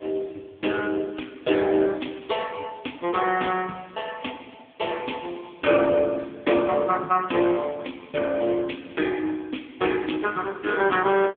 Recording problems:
phone line; 220 Hz to 3.5 kHz, AMR-NB

